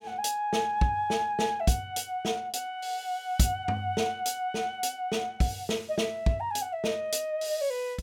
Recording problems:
none

